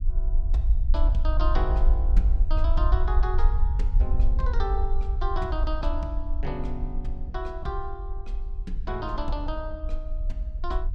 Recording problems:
low-frequency rumble; below 54 Hz, SNR -7 dB

